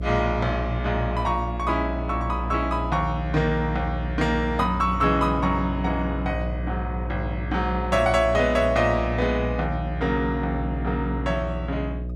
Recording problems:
electrical hum; 60 Hz, harmonics up to 660 Hz, SNR 6 dB

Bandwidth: 14 kHz